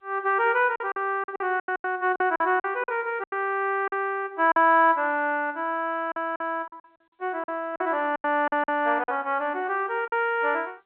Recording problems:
telephone audio; 300 Hz to 3.2 kHz, G.711
lost packets; 11% of the sound replaced, filled with silence

